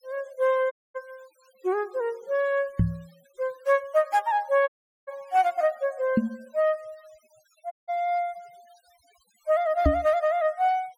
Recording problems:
denoising artefacts; signal-to-artefact ratio 28 dB
audio cutting out; at 0.5 s, at 4.5 s and at 7.5 s
knock on the microphone; at 3 s, at 6 s and at 10 s; peak +7 dB vs average level

